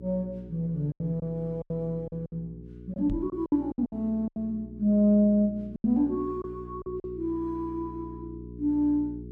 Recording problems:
hum; 60 Hz, harmonics up to 420 Hz, SNR 15 dB
lost packets; 9% of the sound replaced, filled with silence
microphone thump; at 3 s; peak -3 dB vs average level

